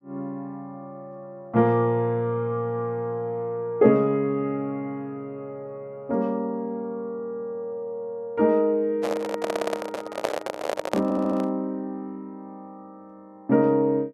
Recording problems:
microphone handling noise; from 9 to 11 s; peak +4 dB vs average level
stutter; at 9.5 s and at 11 s

